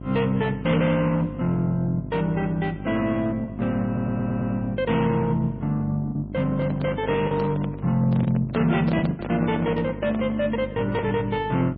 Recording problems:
codec artefacts; MP3, log-spectral distance 2 dB
hum; 50 Hz, harmonics up to 700 Hz, SNR 12 dB
packet loss; 3% of the sound replaced, filled with the last packet
audio stuttering; at 4 s
microphone handling noise; from 6.5 to 11 s; peak -4 dB vs average level

